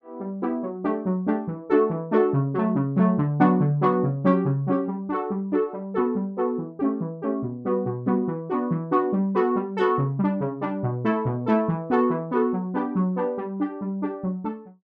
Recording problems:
none

